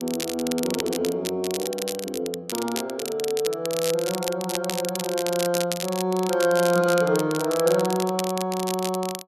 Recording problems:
crackle; vinyl, SNR 7 dB

